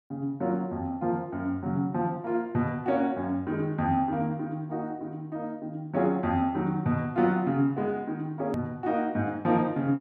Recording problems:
click at an edit; at 8.5 s

